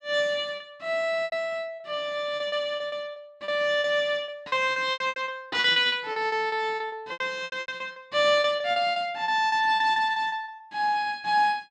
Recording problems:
lost packets; 17% of the sound replaced, filled with repeated pitch periods

